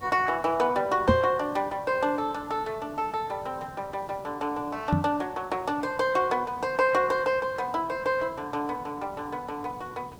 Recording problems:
lossy codec; Vorbis, log-spectral distance 2 dB, nothing above 16 kHz
background hiss; SNR 21 dB
microphone thump; at 1 s and at 5 s; peak +8 dB vs average level

